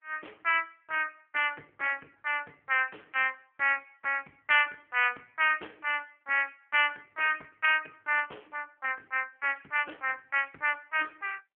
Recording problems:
telephone audio; 430 Hz to 3.1 kHz, AMR-NB

